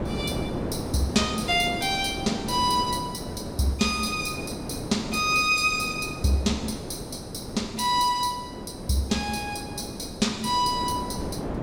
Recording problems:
wind on the microphone; below 530 Hz, SNR 9 dB

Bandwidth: 16.5 kHz